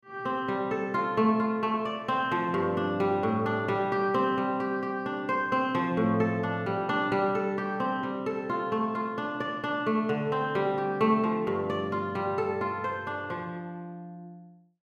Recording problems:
none

